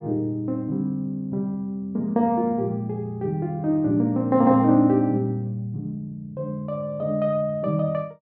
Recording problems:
none

